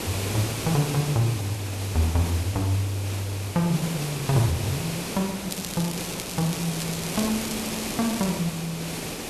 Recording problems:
mains hum; 60 Hz, harmonics up to 660 Hz, SNR 29 dB
hiss; SNR 5 dB
crackle; from 5.5 to 8.5 s; loose cable, SNR 9 dB

